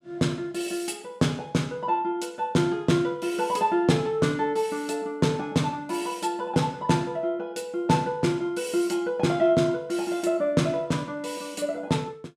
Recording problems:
none

